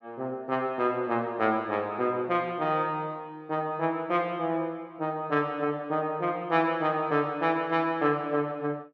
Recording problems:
none

